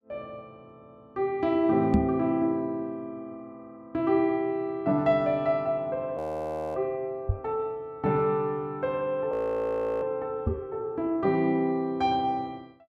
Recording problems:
microphone thump; at 2 s, at 7.5 s and at 10 s; peak +7 dB vs average level
frozen audio; at 6 s for 0.5 s and at 9.5 s for 0.5 s

